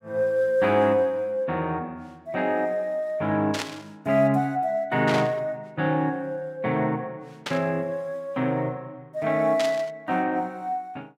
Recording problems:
static burst; 4 times, first at 3.5 s; peak 0 dB vs average level

